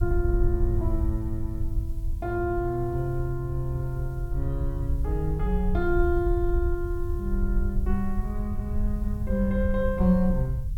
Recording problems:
background hiss; slope +2 dB per octave, SNR 30 dB
rumble; below 72 Hz, SNR 1 dB

